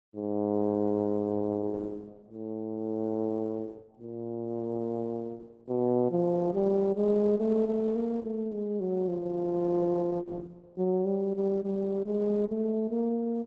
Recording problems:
lossy compression; Opus, log-spectral distance 2 dB, nothing above 7.3 kHz

